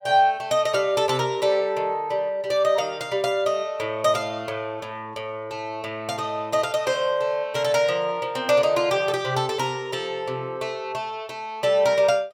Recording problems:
none

